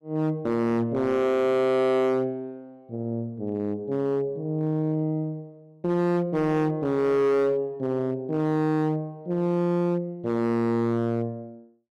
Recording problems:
distortion; hard clipping, signal-to-distortion ratio 8 dB

